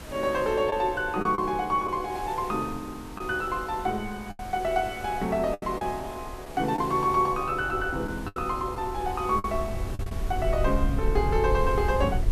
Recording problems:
background hiss; slope -3 dB per octave, SNR 17 dB
wind noise; below 78 Hz, SNR 7 dB
lost packets; 5% of the sound replaced, filled with the last packet

